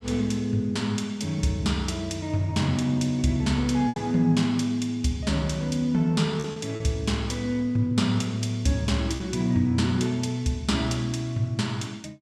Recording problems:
lost packets; 2% of the sound replaced, filled with repeated pitch periods

